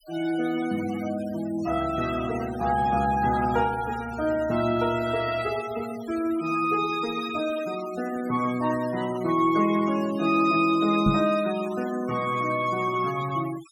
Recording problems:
denoising artefacts; signal-to-artefact ratio 16 dB
microphone thump; at 11 s; peak +4 dB vs average level

